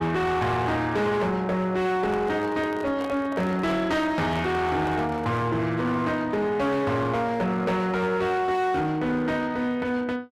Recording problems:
distorted audio; hard clipping, signal-to-distortion ratio 10 dB
handling noise; from 2 to 5.5 s; peak -9 dB vs average level

